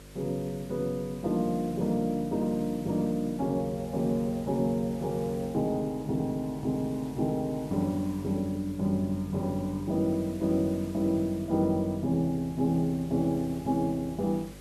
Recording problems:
hum; 50 Hz, harmonics up to 600 Hz, SNR 20 dB
background hiss; slope -1 dB per octave, SNR 23 dB

